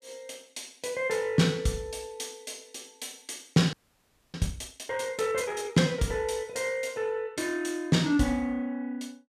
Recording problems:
frozen audio; at 3.5 s for 0.5 s

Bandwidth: 14.5 kHz